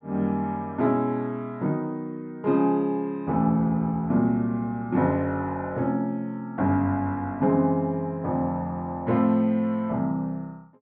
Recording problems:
none

